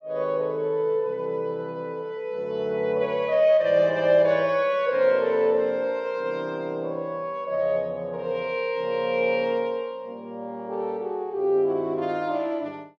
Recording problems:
none

